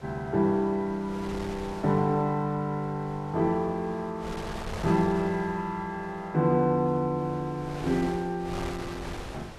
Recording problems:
wind on the microphone; below 1.3 kHz, SNR 13 dB

